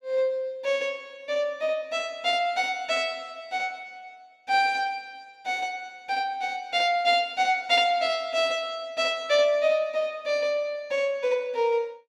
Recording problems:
none

